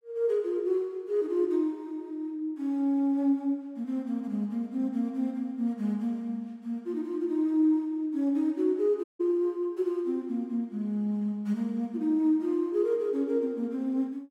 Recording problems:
audio cutting out; at 9 s

